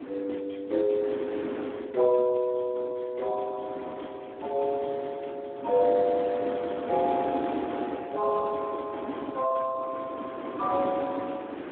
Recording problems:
telephone audio; 240 Hz to 3.4 kHz, Speex
wind noise; below 650 Hz, SNR 8 dB

